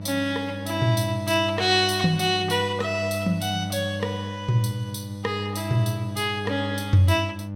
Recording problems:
hum; 50 Hz, harmonics up to 600 Hz, SNR 9 dB

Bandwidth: 16.5 kHz